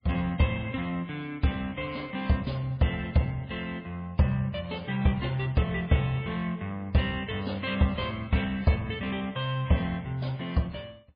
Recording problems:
codec artefacts; MP3, log-spectral distance 2 dB, nothing above 4.2 kHz

